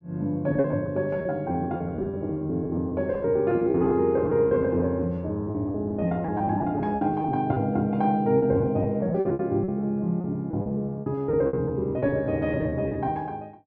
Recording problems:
packet loss; 15% of the sound replaced, filled with repeated pitch periods

